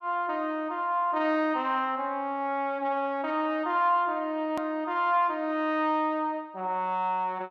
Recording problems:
edit click; at 4.5 s

